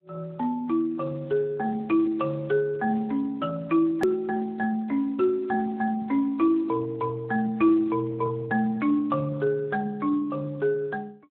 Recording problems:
phone line; 240 Hz to 2.1 kHz, Speex
click at an edit; at 4 s

